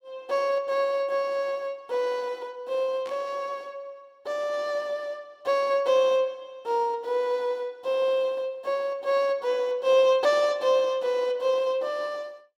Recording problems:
burst of static; at 3 s; peak -15 dB vs average level

